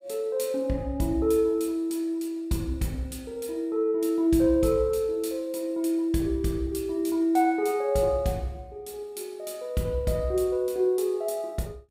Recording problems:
none

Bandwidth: 15.5 kHz